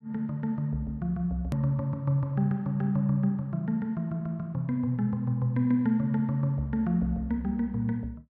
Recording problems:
click at an edit; at 1.5 s

